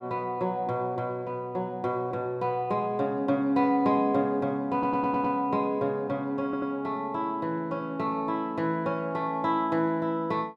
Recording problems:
stutter; at 4.5 s and at 6.5 s

